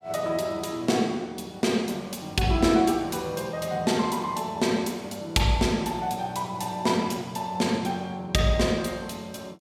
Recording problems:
none

